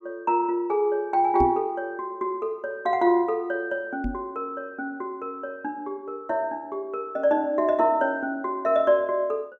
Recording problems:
microphone bump; at 1.5 s and at 4 s; peak +1 dB vs average level

